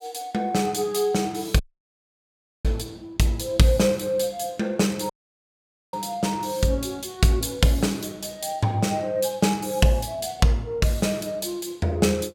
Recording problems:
dropout; at 1.5 s for 1 s and at 5 s for 1 s

